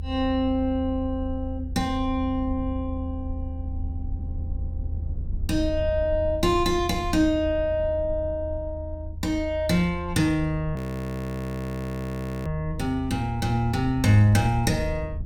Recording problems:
rumble; below 80 Hz, SNR 8 dB
frozen audio; at 11 s for 1.5 s

